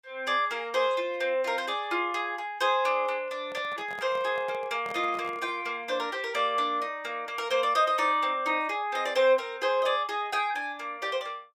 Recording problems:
handling noise; from 3.5 to 5.5 s; peak -10 dB vs average level

